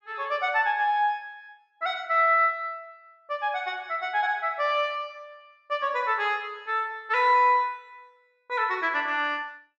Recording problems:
none

